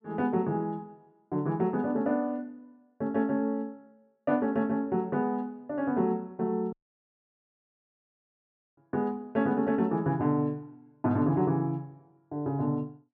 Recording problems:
audio cutting out; at 6.5 s for 2 s

